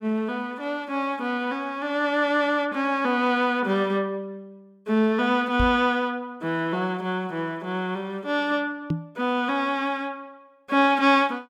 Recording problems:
knock on the microphone; at 5.5 s and at 9 s; peak +2 dB vs average level

